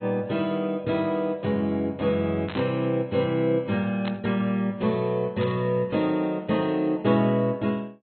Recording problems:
treble missing; nothing above 4.1 kHz
codec artefacts; AAC, log-spectral distance 2 dB
static burst; at 2.5 s, at 4 s and at 5.5 s; peak -6 dB vs average level

